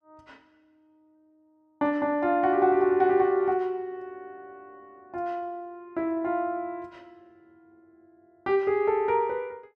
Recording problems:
none

